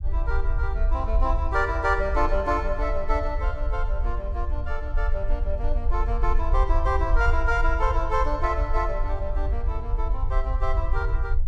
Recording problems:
rumble; below 56 Hz, SNR 0 dB

